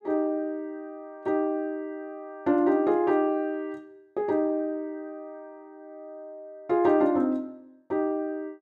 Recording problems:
none

